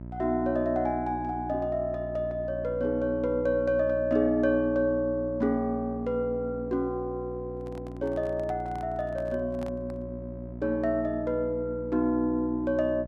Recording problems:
electrical hum; 60 Hz, harmonics up to 720 Hz, SNR 12 dB
microphone handling noise; from 7.5 to 10 s; peak -11 dB vs average level

